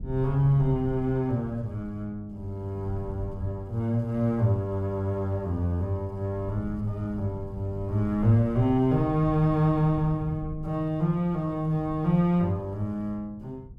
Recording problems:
hum; 50 Hz, harmonics up to 500 Hz, SNR 24 dB
low-frequency rumble; below 120 Hz, SNR 15 dB

